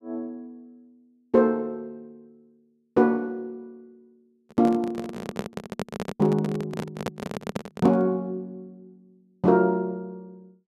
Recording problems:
handling noise; from 4.5 to 8 s; peak -1 dB vs average level

